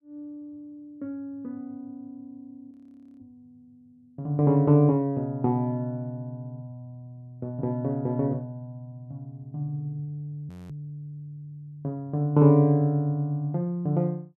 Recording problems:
frozen audio; at 2.5 s and at 10 s

